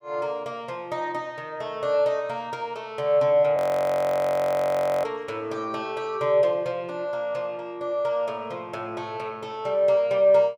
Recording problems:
audio freezing; at 3.5 s for 1.5 s

